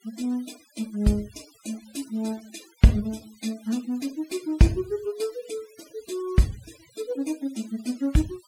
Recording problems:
denoising artefacts; signal-to-artefact ratio 21 dB

